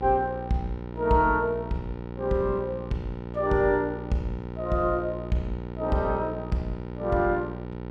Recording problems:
hum; 60 Hz, harmonics up to 1.9 kHz, SNR 9 dB

